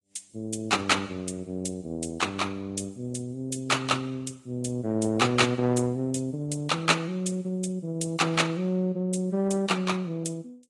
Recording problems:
codec artefacts; AAC, then Vorbis, log-spectral distance 3 dB, nothing above 10.1 kHz

